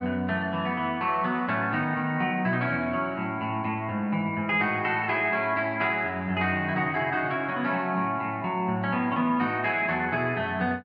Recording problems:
none

